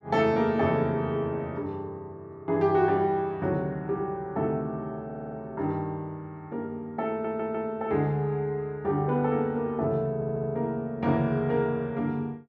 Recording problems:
audio stuttering; at 5 s, at 7 s and at 10 s

